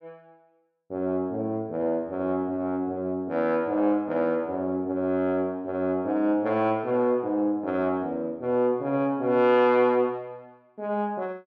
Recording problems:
none

